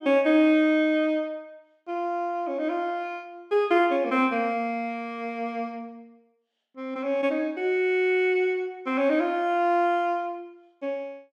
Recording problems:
none

